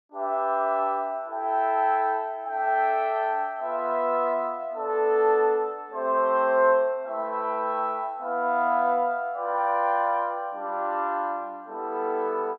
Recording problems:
none

